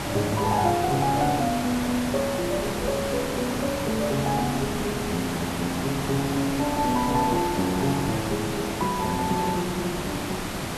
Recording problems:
background hiss; slope -4 dB per octave, SNR 3 dB
wind noise; below 370 Hz, SNR 20 dB

